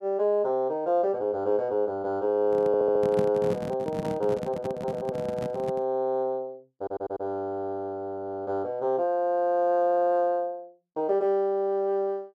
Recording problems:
microphone handling noise; from 2.5 to 6 s; peak 0 dB vs average level
audio stuttering; at 2.5 s, at 7 s and at 10 s

